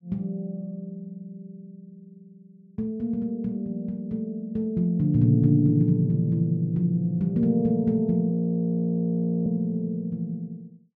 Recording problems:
frozen audio; at 8.5 s for 1 s

